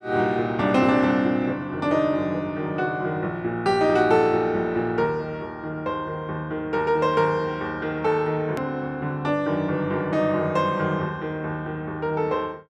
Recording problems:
hard cut with a click; at 8.5 s

